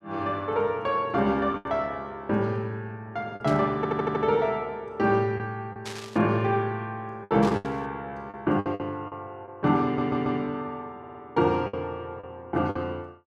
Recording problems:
packet loss; 6% of the sound replaced, filled with the last packet
burst of static; at 3.5 s, at 6 s and at 7.5 s; peak -6 dB vs average level
audio stuttering; at 4 s, at 10 s and at 11 s

